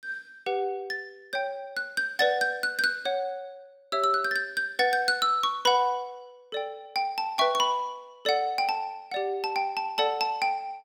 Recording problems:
none

